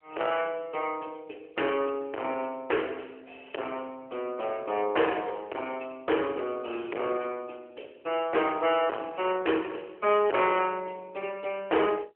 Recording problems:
telephone audio; 320 Hz to 3.1 kHz, AMR-NB
distortion; soft clipping, signal-to-distortion ratio 6 dB

